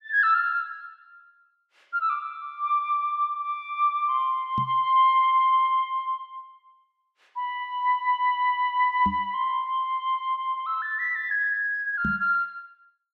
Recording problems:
microphone thump; at 4.5 s, at 9 s and at 12 s; peak -2 dB vs average level

